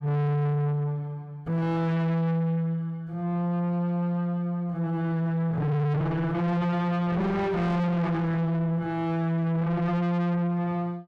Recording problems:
distorted audio; soft clipping, signal-to-distortion ratio 5 dB

